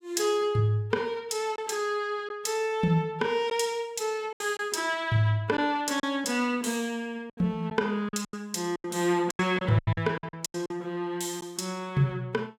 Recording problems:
lost packets; 7% of the sound replaced, filled with silence

